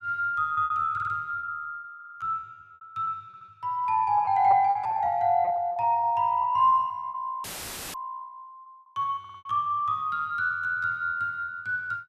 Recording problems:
lost packets; 15% of the sound replaced, filled with repeated pitch periods
audio stuttering; 4 times, first at 1 s
dropout; at 7.5 s for 0.5 s; filled with static

